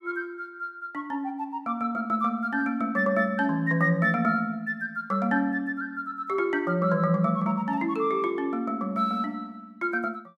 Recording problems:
none

